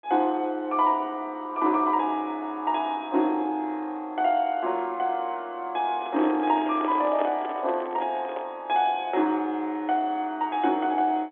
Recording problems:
phone line; 240 Hz to 3.8 kHz, G.711
microphone handling noise; from 6 to 8.5 s; peak -3 dB vs average level

